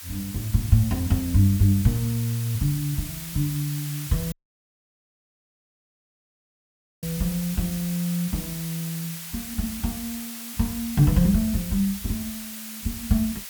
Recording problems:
background hiss; slope +3 dB per octave, SNR 9 dB
audio cutting out; at 4.5 s for 2.5 s

